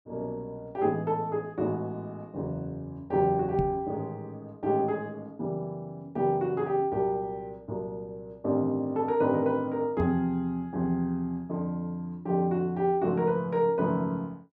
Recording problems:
microphone thump; at 3.5 s and at 10 s; peak +3 dB vs average level

